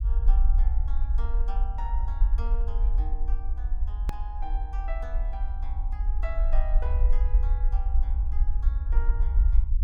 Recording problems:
rumble; below 50 Hz, SNR -15 dB
hard cut with a click; at 4 s

